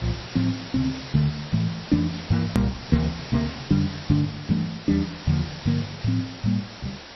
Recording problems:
lossy codec; MP3, then MP2, log-spectral distance 20 dB, nothing above 13.1 kHz
background hiss; slope -2 dB per octave, SNR 12 dB
hard cut with a click; at 2.5 s

